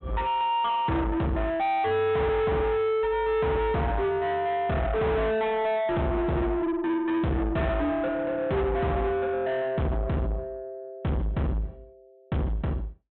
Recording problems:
low-pass filter; nothing above 3.9 kHz
distortion; soft clipping, signal-to-distortion ratio 6 dB

